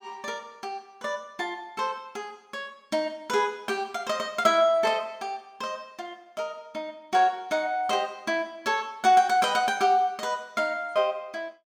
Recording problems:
none

